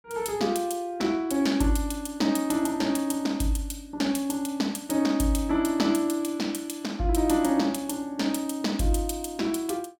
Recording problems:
none

